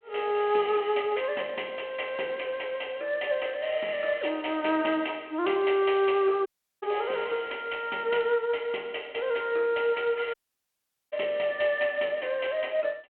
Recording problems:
phone line; 280 Hz to 3.3 kHz, G.726
audio cutting out; at 6.5 s and at 10 s for 1 s

